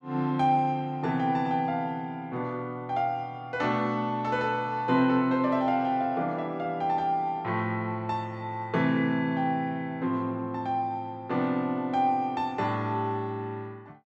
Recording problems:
none

